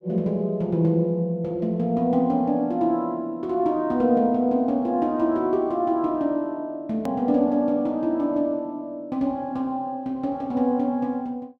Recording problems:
click at an edit; at 7 s

